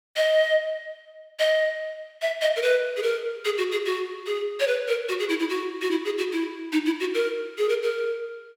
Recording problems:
none

